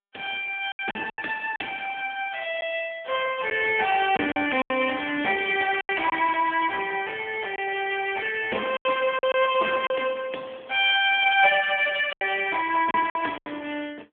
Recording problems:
phone line; 240 Hz to 3.4 kHz, AMR-NB
packet loss; 7% of the sound replaced, filled with silence

